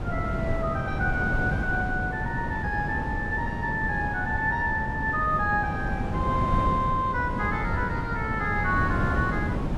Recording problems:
wind noise; below 290 Hz, SNR 3 dB

